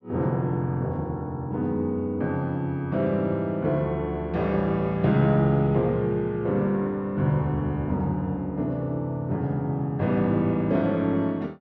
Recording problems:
none

